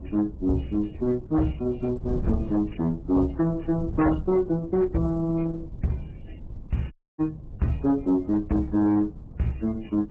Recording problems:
codec artefacts; MP3, then Opus, log-spectral distance 3 dB
distortion; hard clipping, signal-to-distortion ratio 11 dB
wind on the microphone; below 140 Hz, SNR 14 dB
audio cutting out; at 7 s

